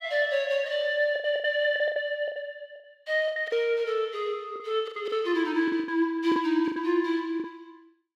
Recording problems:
packet loss; 13% of the sound replaced, filled with the last packet

